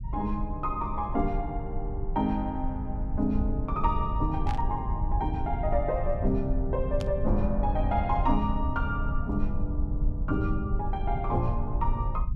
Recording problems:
rumble; below 78 Hz, SNR 2 dB
static burst; at 4.5 s and at 7 s; peak -5 dB vs average level

